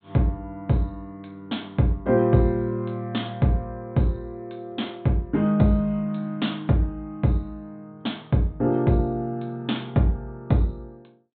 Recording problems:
treble missing; nothing above 4 kHz

